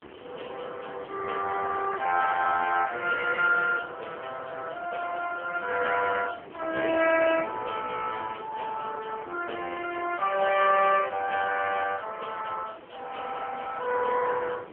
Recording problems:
phone line; 320 Hz to 2.8 kHz, AMR-NB
background hiss; SNR 24 dB
wind noise; below 510 Hz, SNR 18 dB

